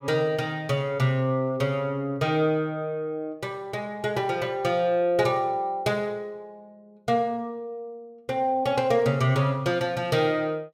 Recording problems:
none

